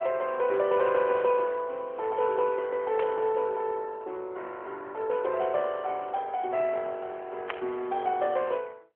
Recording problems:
phone line; 300 Hz to 3.5 kHz, AMR-NB
static burst; at 3 s and at 7.5 s; peak +1 dB vs average level

